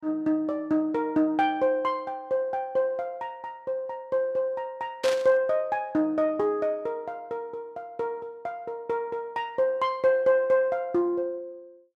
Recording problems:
static burst; at 5 s; peak -1 dB vs average level

